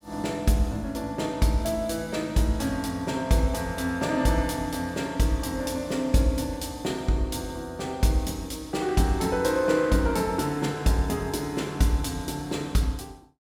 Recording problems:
none

